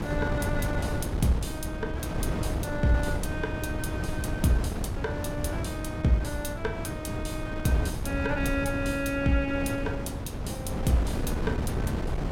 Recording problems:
wind on the microphone; below 310 Hz, SNR 1 dB

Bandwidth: 16.5 kHz